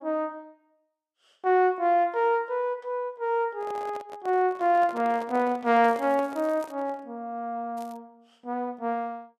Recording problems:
handling noise; from 3.5 to 7 s; peak -10 dB vs average level
crackle; at 6 s and at 8 s; loose cable, SNR 29 dB

